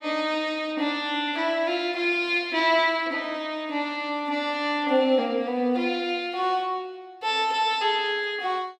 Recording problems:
none

